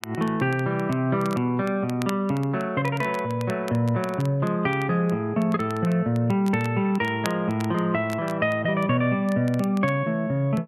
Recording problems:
crackling; vinyl, SNR 20 dB

